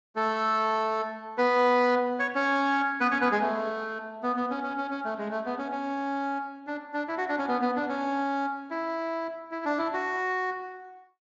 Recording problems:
lossy codec; Speex, log-spectral distance 2 dB

